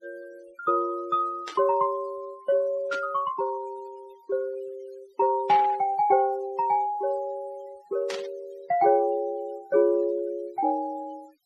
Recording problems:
noise reduction artefacts; signal-to-artefact ratio 25 dB
burst of static; 4 times, first at 1.5 s; peak -4 dB vs average level

